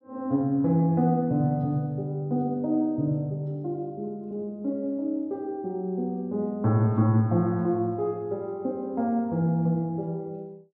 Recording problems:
none

